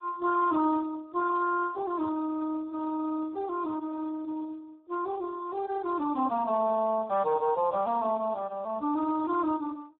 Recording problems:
phone line; 240 Hz to 2.1 kHz, Speex

